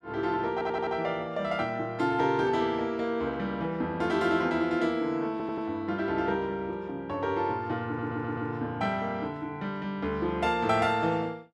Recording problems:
audio stuttering; at 0.5 s, at 5.5 s and at 8 s

